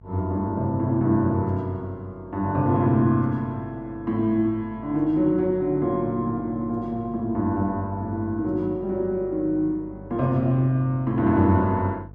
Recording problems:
hum; 50 Hz, harmonics up to 700 Hz, SNR 21 dB

